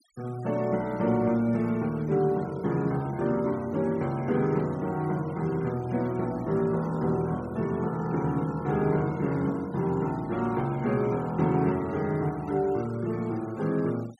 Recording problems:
noise reduction artefacts; signal-to-artefact ratio 23 dB

